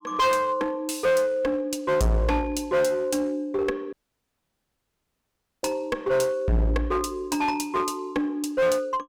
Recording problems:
distorted audio; hard clipping, uneven, signal-to-distortion ratio 6 dB
audio cutting out; at 4 s for 1.5 s

